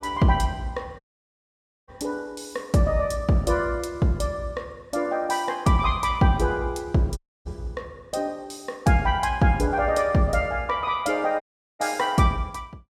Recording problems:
audio cutting out; at 1 s for 1 s, at 7 s and at 11 s

